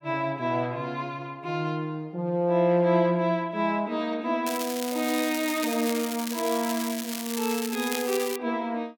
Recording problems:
crackle; from 4.5 to 8.5 s; loose cable, SNR 7 dB

